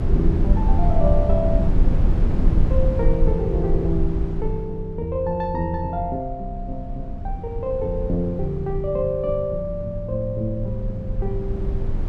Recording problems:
low-frequency rumble; below 70 Hz, SNR -1 dB

